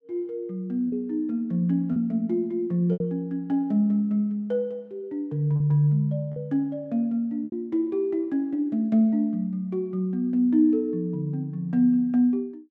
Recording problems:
packet loss; 3% of the sound replaced, filled with repeated pitch periods

